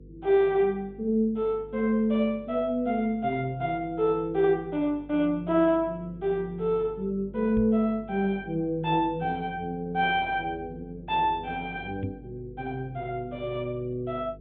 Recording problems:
treble cut off; nothing above 4 kHz
hum; 50 Hz, harmonics up to 500 Hz, SNR 21 dB
microphone bump; at 7.5 s and at 12 s; peak -3 dB vs average level

